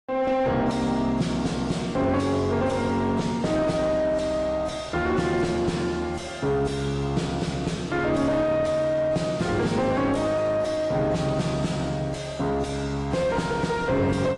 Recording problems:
codec artefacts; AAC, log-spectral distance 3 dB, nothing above 10.1 kHz
distorted audio; soft clipping, signal-to-distortion ratio 7 dB

